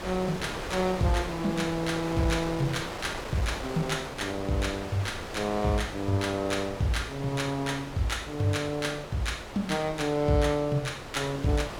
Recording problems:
wind on the microphone; below 1.9 kHz, SNR 9 dB

